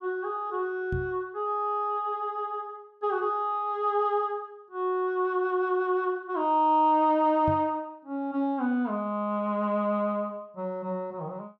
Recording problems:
microphone bump; at 1 s and at 7.5 s; peak -1 dB vs average level

